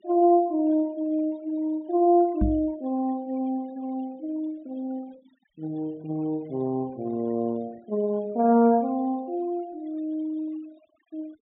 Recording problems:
treble missing; nothing above 4 kHz
noise reduction artefacts; signal-to-artefact ratio 27 dB
microphone thump; at 2.5 s; peak +4 dB vs average level

